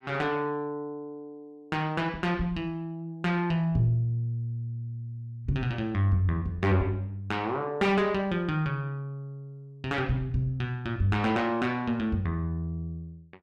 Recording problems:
distorted audio; soft clipping, signal-to-distortion ratio 10 dB

